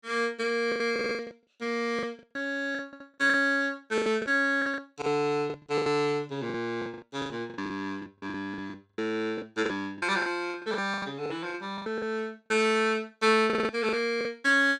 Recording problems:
packet loss; 15% of the sound replaced, filled with the last packet
stutter; at 1 s, at 3 s and at 13 s

